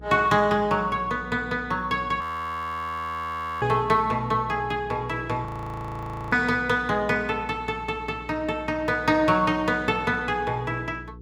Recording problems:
electrical hum; 60 Hz, harmonics up to 480 Hz, SNR 19 dB
frozen audio; at 2 s for 1.5 s and at 5.5 s for 1 s

